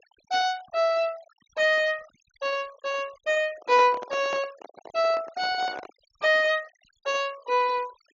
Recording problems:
low-pass filter; nothing above 7 kHz
noise reduction artefacts; signal-to-artefact ratio 24 dB
microphone handling noise; from 3.5 to 6 s; peak -7 dB vs average level

